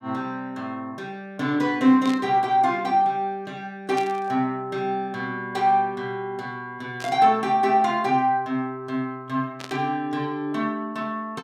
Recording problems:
burst of static; 4 times, first at 2 s; peak -8 dB vs average level

